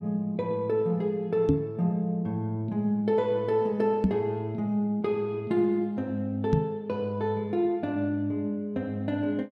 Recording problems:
microphone thump; at 1.5 s, at 4 s and at 6.5 s; peak +8 dB vs average level

